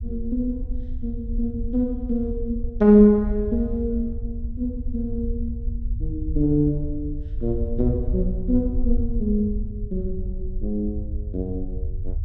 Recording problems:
rumble; below 68 Hz, SNR 7 dB

